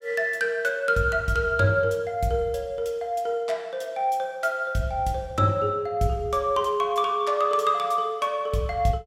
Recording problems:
none

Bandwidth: 16 kHz